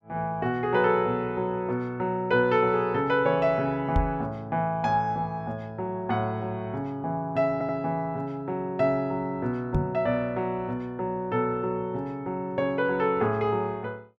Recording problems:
knock on the microphone; at 4 s and at 10 s; peak +4 dB vs average level
stutter; at 7.5 s

